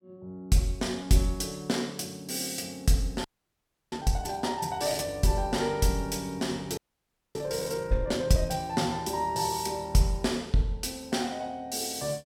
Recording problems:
frozen audio; at 3.5 s for 0.5 s and at 7 s for 0.5 s

